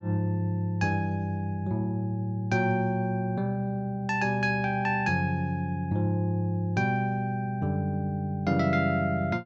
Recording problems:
none

